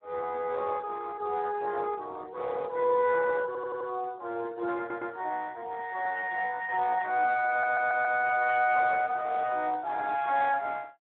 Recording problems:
telephone audio; 300 Hz to 3.7 kHz, Speex
stutter; at 3.5 s, at 5 s and at 7.5 s

